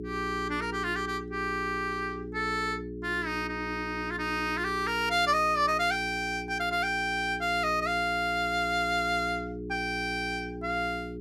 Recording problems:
electrical hum; 60 Hz, harmonics up to 420 Hz, SNR 9 dB

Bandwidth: 14.5 kHz